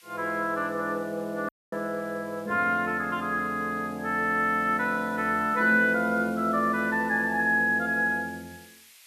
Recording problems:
background hiss; SNR 26 dB
audio cutting out; at 1.5 s

